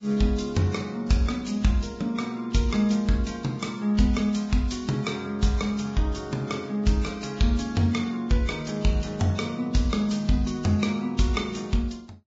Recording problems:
lossy codec; Vorbis, log-spectral distance 3 dB, nothing above 7.3 kHz

